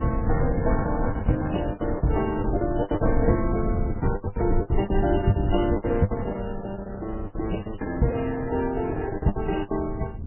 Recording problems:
lossy codec; MP3, then Vorbis, log-spectral distance 3 dB, nothing above 2.9 kHz
low-frequency rumble; below 110 Hz, SNR 4 dB
lost packets; 16% of the sound replaced, filled with the last packet

